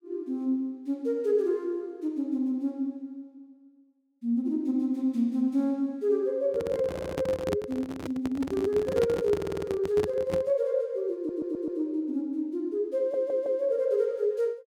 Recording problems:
handling noise; from 6.5 to 11 s; peak +2 dB vs average level
audio stuttering; 4 times, first at 7 s

